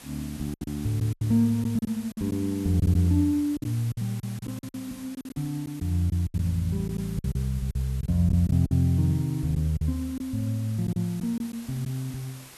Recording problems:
hiss; slope -1 dB per octave, SNR 19 dB
lost packets; 10% of the sound replaced, filled with silence

